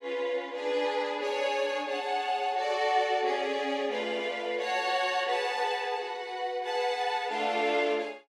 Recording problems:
none

